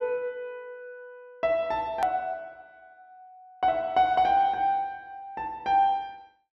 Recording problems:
hard cut with a click; at 2 s

